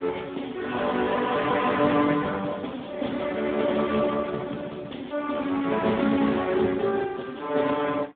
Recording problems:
phone line; 190 Hz to 3.8 kHz, Speex

